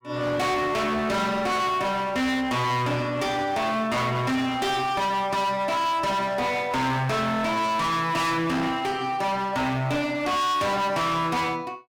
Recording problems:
distortion; hard clipping, signal-to-distortion ratio 6 dB

